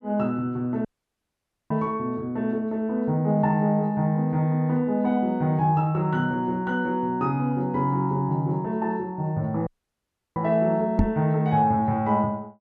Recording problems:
audio cutting out; at 1 s for 1 s and at 9.5 s for 0.5 s
microphone thump; at 11 s; peak +7 dB vs average level

